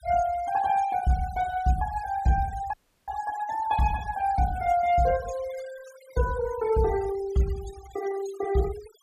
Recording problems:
denoising artefacts; signal-to-artefact ratio 17 dB
audio cutting out; at 2.5 s

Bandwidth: 14.5 kHz